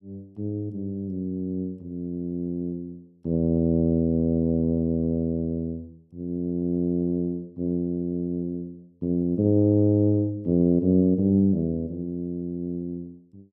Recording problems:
none

